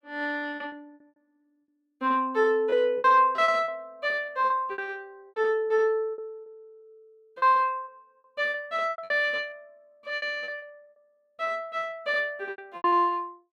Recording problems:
lost packets; 13% of the sound replaced, filled with repeated pitch periods

